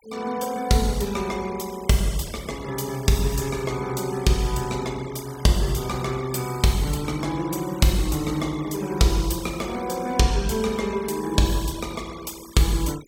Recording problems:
noise reduction artefacts; signal-to-artefact ratio 19 dB

